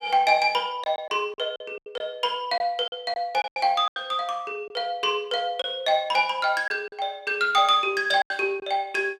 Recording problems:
lost packets; 8% of the sound replaced, filled with silence

